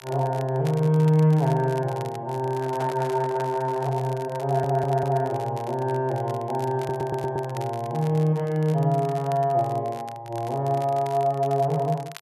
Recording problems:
crackling; vinyl, SNR 22 dB
handling noise; from 2.5 to 4 s; peak -6 dB vs average level
stutter; at 4.5 s and at 7 s

